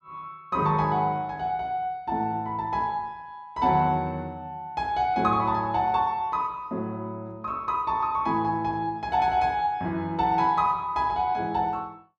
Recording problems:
none

